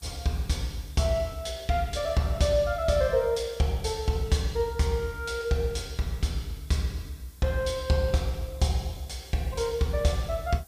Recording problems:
hiss; SNR 25 dB

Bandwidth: 15 kHz